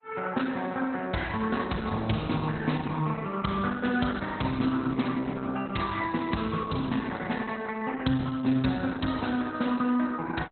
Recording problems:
lossy codec; Opus, log-spectral distance 5 dB, nothing above 4.1 kHz

